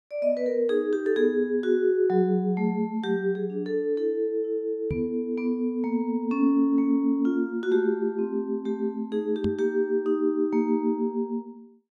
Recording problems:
knock on the microphone; at 5 s and at 9.5 s; peak -1 dB vs average level

